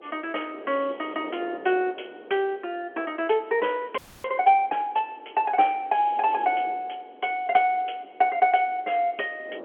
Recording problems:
telephone audio; 300 Hz to 3.2 kHz, G.711
wind noise; below 600 Hz, SNR 20 dB
frozen audio; at 4 s

